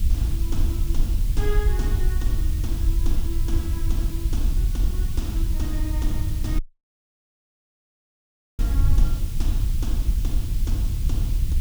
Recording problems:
background hiss; SNR 4 dB
low-frequency rumble; below 86 Hz, SNR -4 dB
wind noise; below 62 Hz, SNR -11 dB
audio cutting out; at 6.5 s for 2 s

